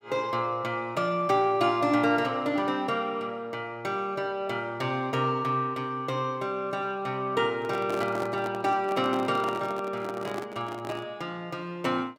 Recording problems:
handling noise; from 7.5 to 11 s; peak -3 dB vs average level

